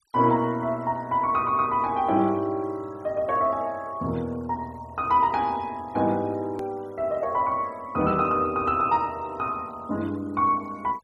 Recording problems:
denoising artefacts; signal-to-artefact ratio 28 dB
edit click; at 6.5 s

